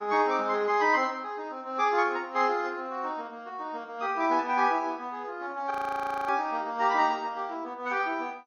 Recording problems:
lossy compression; MP2, then AAC, log-spectral distance 2 dB, nothing above 16.6 kHz
audio freezing; at 5.5 s for 0.5 s

